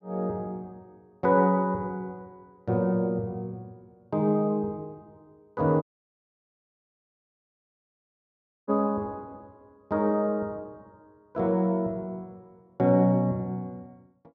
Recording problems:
dropout; at 6 s for 3 s

